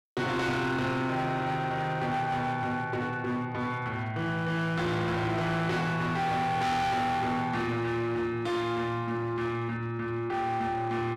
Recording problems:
distorted audio; hard clipping, signal-to-distortion ratio 8 dB

